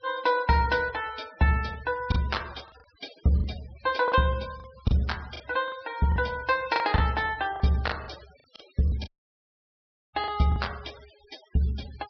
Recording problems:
treble missing; nothing above 5.5 kHz
denoising artefacts; signal-to-artefact ratio 21 dB
packet loss; 8% of the sound replaced, filled with the last packet
audio cutting out; at 9 s for 1 s

